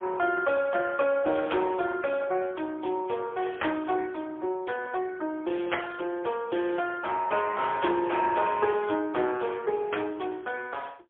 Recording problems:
phone line; 260 Hz to 3.4 kHz, AMR-NB, then MP3

